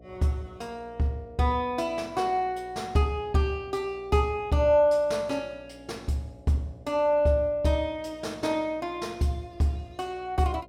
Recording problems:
hum; 60 Hz, harmonics up to 720 Hz, SNR 24 dB

